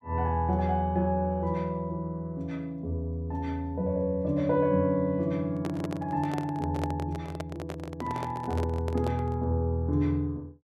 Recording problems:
microphone handling noise; from 5.5 to 9.5 s; peak -2 dB vs average level

